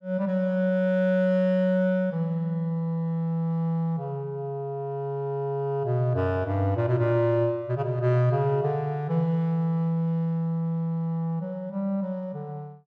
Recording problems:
none

